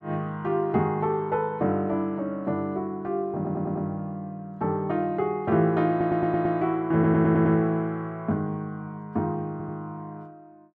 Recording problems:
audio stuttering; 4 times, first at 3.5 s

